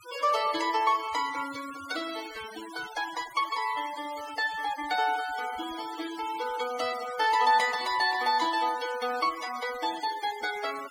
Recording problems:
denoising artefacts; signal-to-artefact ratio 14 dB

